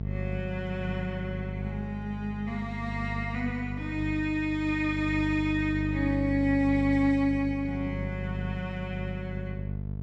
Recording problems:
electrical hum; 50 Hz, harmonics up to 500 Hz, SNR 5 dB

